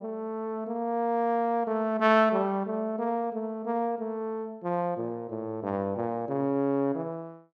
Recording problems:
none

